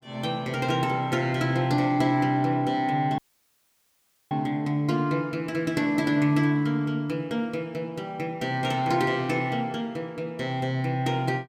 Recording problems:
dropout; at 3 s for 1 s

